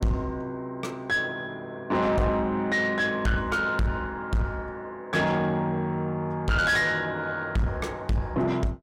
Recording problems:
distorted audio; soft clipping, signal-to-distortion ratio 7 dB

